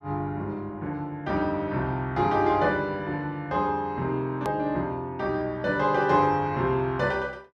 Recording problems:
click at an edit; at 4.5 s

